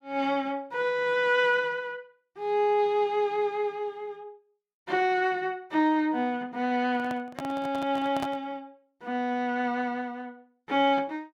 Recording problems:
microphone handling noise; from 7 to 8.5 s; peak -3 dB vs average level

